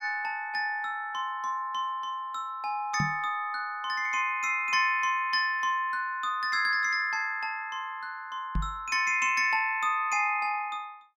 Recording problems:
microphone thump; at 3 s and at 8.5 s; peak +1 dB vs average level

